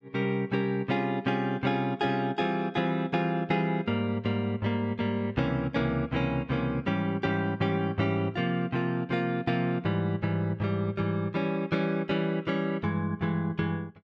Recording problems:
none

